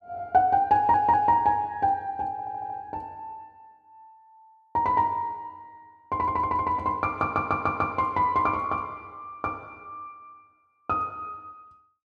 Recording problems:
stutter; 4 times, first at 1 s

